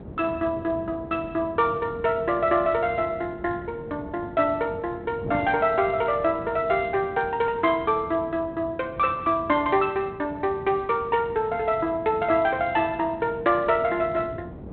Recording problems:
phone line; 240 Hz to 3.9 kHz, G.726
wind noise; below 390 Hz, SNR 16 dB

